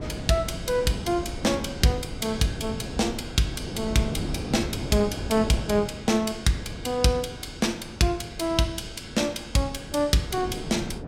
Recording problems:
wind noise; below 340 Hz, SNR 10 dB

